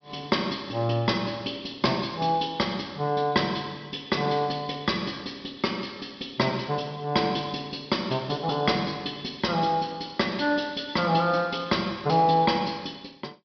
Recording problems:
low-pass filter; nothing above 5.5 kHz

